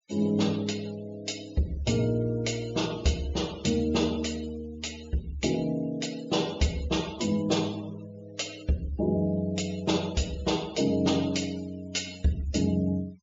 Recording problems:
low-pass filter; nothing above 7.3 kHz
denoising artefacts; signal-to-artefact ratio 19 dB

